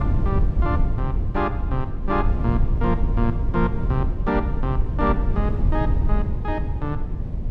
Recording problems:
low-frequency rumble; below 94 Hz, SNR -2 dB

